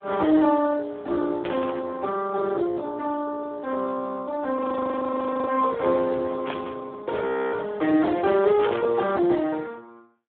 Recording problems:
phone line; 260 Hz to 2.1 kHz, Speex
static burst; at 1.5 s, at 6.5 s and at 8.5 s; peak -2 dB vs average level
frozen audio; at 4.5 s for 1 s and at 7 s

